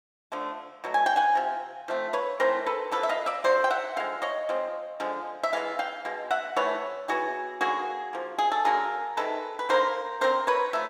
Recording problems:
none

